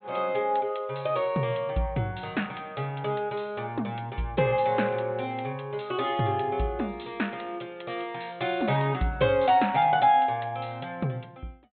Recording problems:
treble missing; nothing above 4 kHz

